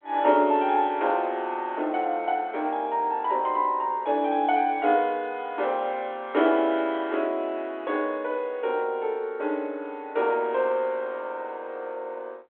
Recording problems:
telephone audio; 260 Hz to 3.6 kHz, G.726

